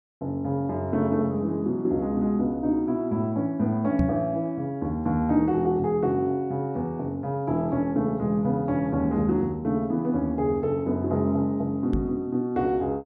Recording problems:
knock on the microphone; at 4 s and at 12 s; peak +4 dB vs average level

